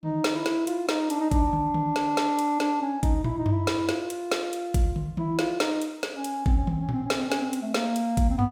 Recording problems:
none

